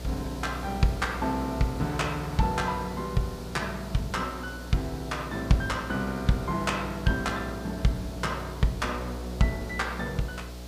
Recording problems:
electrical hum; 60 Hz, harmonics up to 720 Hz, SNR 10 dB
hiss; SNR 17 dB

